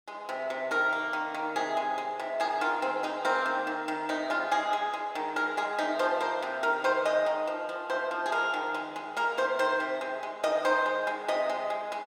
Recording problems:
none

